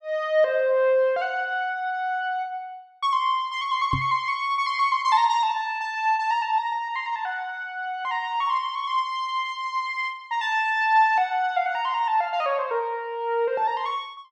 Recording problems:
knock on the microphone; at 4 s; peak -1 dB vs average level

